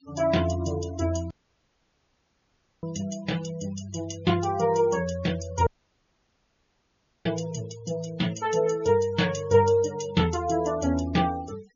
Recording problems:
treble cut off; nothing above 7 kHz
noise reduction artefacts; signal-to-artefact ratio 19 dB
audio cutting out; at 1.5 s for 1.5 s and at 5.5 s for 1.5 s

